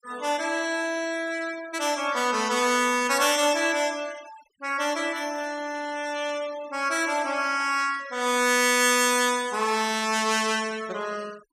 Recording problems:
noise reduction artefacts; signal-to-artefact ratio 19 dB

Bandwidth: 14.5 kHz